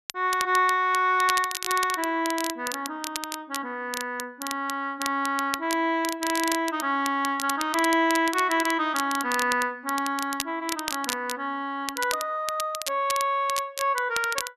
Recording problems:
crackling; vinyl, SNR 9 dB

